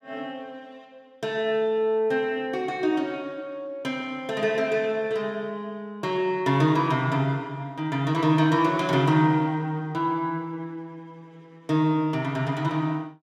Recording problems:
none

